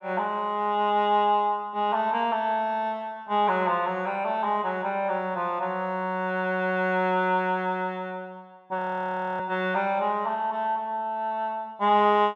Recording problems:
frozen audio; at 9 s for 0.5 s

